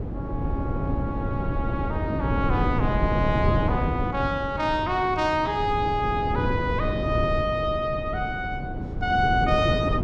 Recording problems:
wind noise; below 270 Hz, SNR 2 dB

